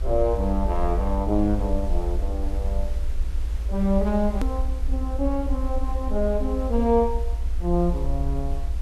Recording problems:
hum; 60 Hz, harmonics up to 600 Hz, SNR 24 dB
hiss; slope -4 dB per octave, SNR 20 dB
low-frequency rumble; below 56 Hz, strongest tone 20 Hz, SNR 2 dB
hard cut with a click; at 4.5 s

